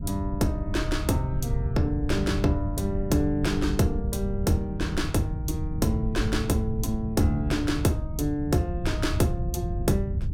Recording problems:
wind noise; below 110 Hz, SNR 4 dB

